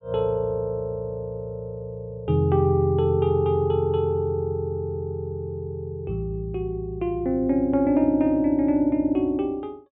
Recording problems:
low-pass filter; nothing above 4 kHz

